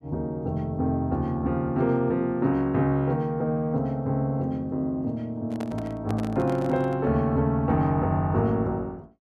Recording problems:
microphone handling noise; from 5.5 to 7 s; peak -7 dB vs average level

